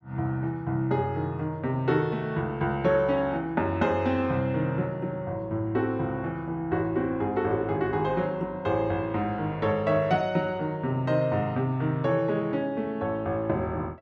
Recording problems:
none

